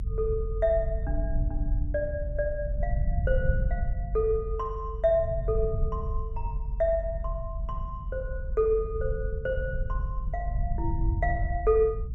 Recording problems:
rumble; below 76 Hz, strongest tone 44 Hz, SNR 2 dB

